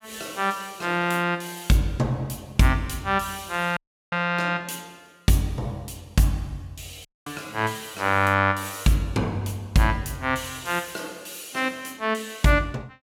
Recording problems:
audio cutting out; at 4 s and at 7 s

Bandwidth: 16.5 kHz